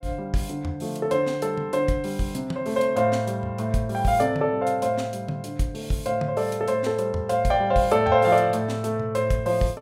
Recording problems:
none

